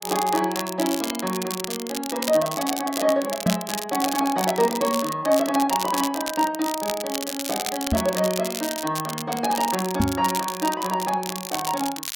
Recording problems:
crackling; vinyl, SNR 6 dB
knock on the microphone; at 3.5 s, at 8 s and at 10 s; peak +7 dB vs average level

